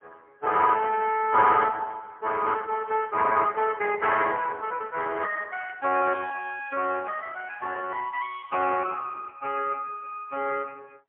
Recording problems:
phone line; 260 Hz to 3.3 kHz, AMR-NB, then MP3

